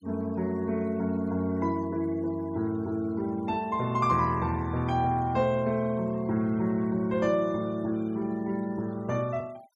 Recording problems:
noise reduction artefacts; signal-to-artefact ratio 26 dB

